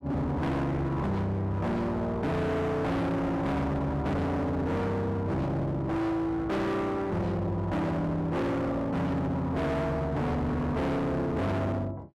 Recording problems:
distortion; hard clipping, uneven, signal-to-distortion ratio 6 dB

